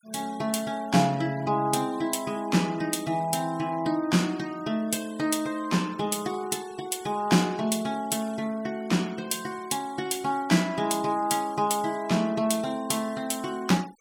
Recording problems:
noise reduction artefacts; signal-to-artefact ratio 22 dB

